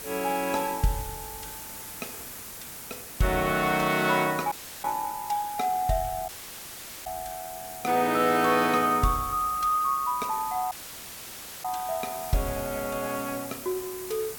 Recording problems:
background hiss; slope -2 dB per octave, SNR 11 dB
dropout; at 4.5 s, at 6.5 s for 1 s and at 11 s for 1 s

